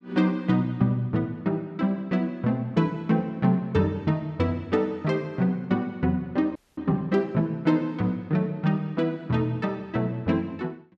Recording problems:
frozen audio; at 6.5 s

